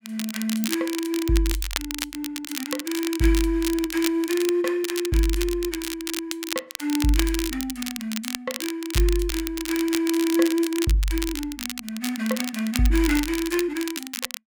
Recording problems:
crackling; vinyl, SNR 6 dB

